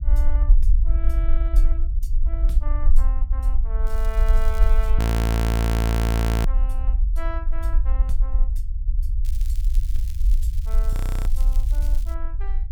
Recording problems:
low-frequency rumble; below 54 Hz, SNR -14 dB
crackling; from 4 to 5 s and from 9.5 to 12 s; loose cable, SNR 10 dB
audio freezing; at 5 s for 1.5 s and at 11 s

